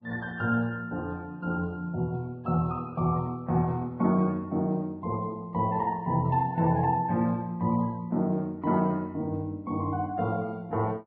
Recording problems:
lossy compression; Vorbis, log-spectral distance 2 dB

